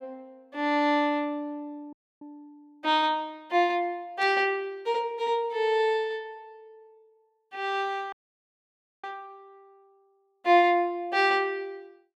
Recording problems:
audio cutting out; at 2 s and at 8 s for 1 s
burst of static; at 4 s; peak -13 dB vs average level

